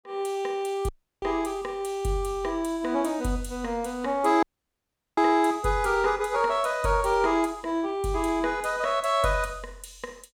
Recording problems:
audio cutting out; at 1 s and at 4.5 s for 0.5 s

